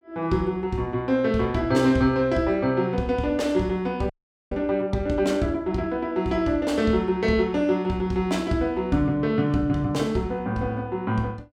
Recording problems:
frozen audio; at 4 s

